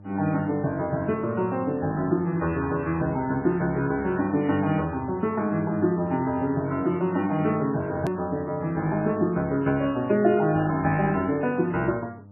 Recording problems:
lossy compression; MP3, log-spectral distance 2 dB, nothing above 13.1 kHz
electrical hum; 50 Hz, harmonics up to 900 Hz, SNR 21 dB
edit click; at 8 s

